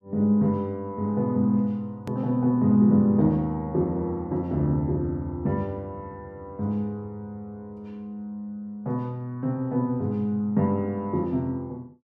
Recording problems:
hard cut with a click; at 2 s

